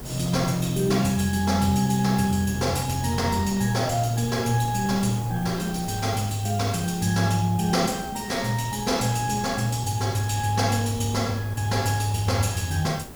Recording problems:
hum; 60 Hz, harmonics up to 600 Hz, SNR 22 dB
background hiss; SNR 20 dB
wind on the microphone; below 520 Hz, SNR 17 dB

